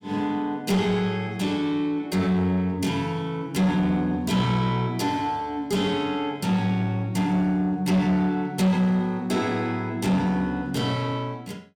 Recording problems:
distortion; soft clipping, signal-to-distortion ratio 11 dB

